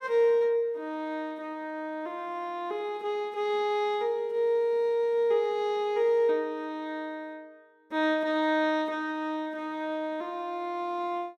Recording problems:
none

